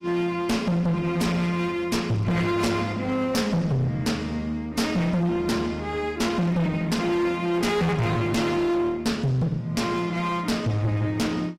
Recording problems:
lossy compression; AAC, log-spectral distance 2 dB, nothing above 15.1 kHz
distorted audio; hard clipping, uneven, signal-to-distortion ratio 5 dB

